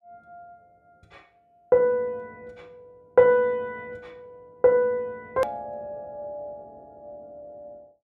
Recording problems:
hard cut with a click; at 5.5 s

